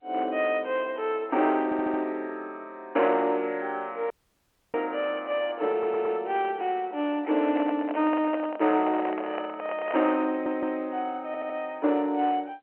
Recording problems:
telephone audio; 260 Hz to 3.1 kHz, G.711
distortion; hard clipping, uneven, signal-to-distortion ratio 11 dB
audio stuttering; 4 times, first at 1.5 s
audio cutting out; at 4 s for 0.5 s
microphone handling noise; from 7 to 10 s; peak -2 dB vs average level

